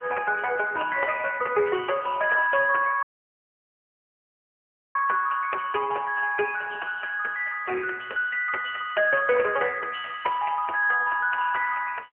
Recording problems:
phone line; 340 Hz to 2.8 kHz, AMR-NB
dropout; at 3 s for 2 s

